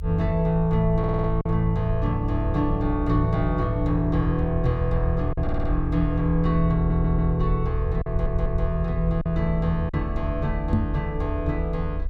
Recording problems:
low-frequency rumble; below 74 Hz, strongest tone 44 Hz, SNR 5 dB
packet loss; 1.9% of the sound replaced, filled with silence
stutter; 4 times, first at 1 s
knock on the microphone; at 11 s; peak +5 dB vs average level

